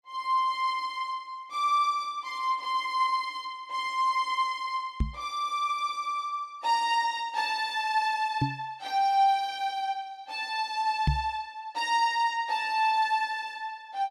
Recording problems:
microphone thump; at 5 s, at 8.5 s and at 11 s; peak +6 dB vs average level

